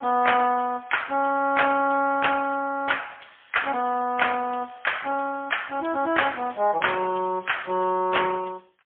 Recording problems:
phone line; 280 Hz to 3.3 kHz, AMR-NB, then MP3

